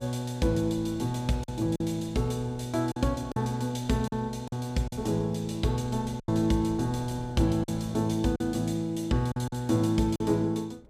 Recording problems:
wind on the microphone; below 300 Hz, SNR 21 dB
lost packets; 5% of the sound replaced, filled with silence

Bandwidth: 15 kHz